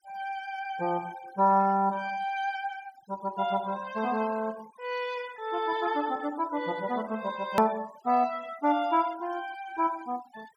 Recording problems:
denoising artefacts; signal-to-artefact ratio 21 dB
hard cut with a click; at 7.5 s

